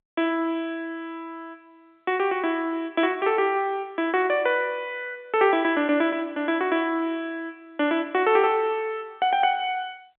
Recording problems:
phone line; 220 Hz to 3.6 kHz, G.711

